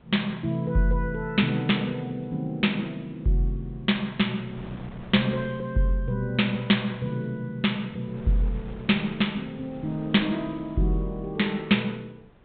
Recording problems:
treble cut off; nothing above 4 kHz
wind on the microphone; below 630 Hz, SNR 23 dB

